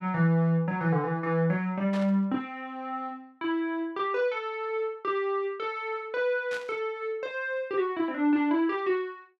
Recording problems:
static burst; at 2 s and at 6.5 s; peak -9 dB vs average level

